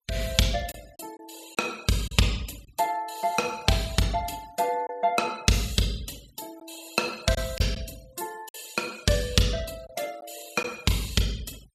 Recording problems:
noise reduction artefacts; signal-to-artefact ratio 21 dB
packet loss; 3% of the sound replaced, filled with silence

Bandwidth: 15.5 kHz